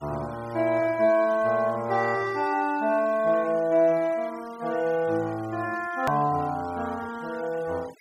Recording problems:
noise reduction artefacts; signal-to-artefact ratio 22 dB
hard cut with a click; at 6 s

